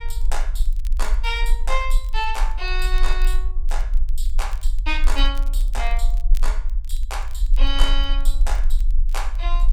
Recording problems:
low-frequency rumble; below 34 Hz, strongest tone 20 Hz, SNR -5 dB
crackling; vinyl, SNR 22 dB

